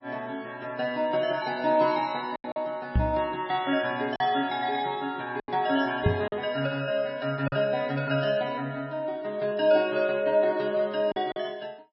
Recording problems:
codec artefacts; MP3, log-spectral distance 2 dB, nothing above 5.5 kHz
packet loss; 3% of the sound replaced, filled with silence
microphone bump; at 3 s and at 6 s; peak +7 dB vs average level

